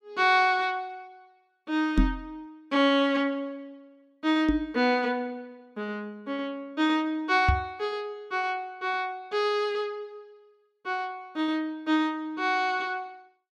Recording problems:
microphone thump; at 2 s, at 4.5 s and at 7.5 s; peak +8 dB vs average level

